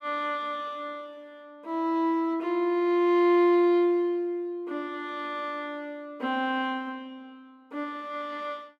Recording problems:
none

